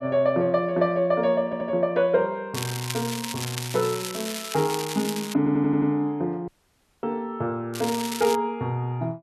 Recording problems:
stutter; at 1.5 s and at 5.5 s
crackle; from 2.5 to 5.5 s and at 7.5 s; loose cable, SNR 8 dB
dropout; at 6.5 s for 0.5 s

